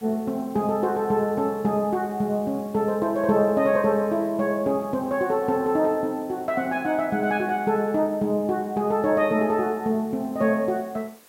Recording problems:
hiss; slope -3 dB per octave, SNR 27 dB

